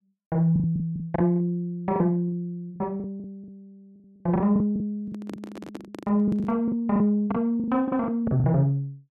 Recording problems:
lost packets; 16% of the sound replaced, filled with the last packet
handling noise; from 5 to 6.5 s; peak -8 dB vs average level

